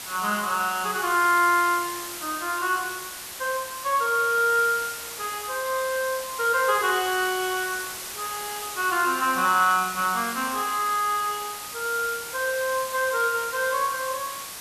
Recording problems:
hiss; slope 0 dB per octave, SNR 9 dB

